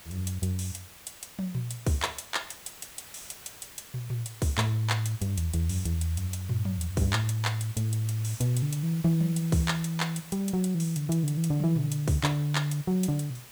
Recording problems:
background hiss; slope -1 dB per octave, SNR 18 dB

